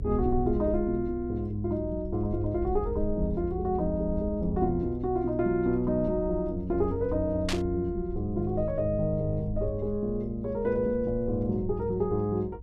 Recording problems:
rumble; below 68 Hz, SNR 10 dB
burst of static; at 7.5 s; peak +1 dB vs average level

